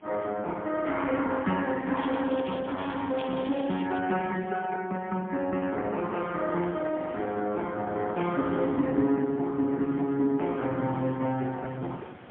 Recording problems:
telephone audio; 150 Hz to 3.8 kHz, AMR-NB, then MP3
wind noise; below 1.2 kHz, SNR 24 dB
crackling; from 2 to 4 s; loose cable, SNR 17 dB

